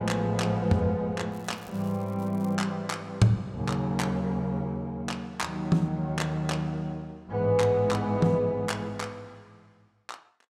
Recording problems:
crackling; from 1.5 to 2.5 s; loose cable, SNR 27 dB

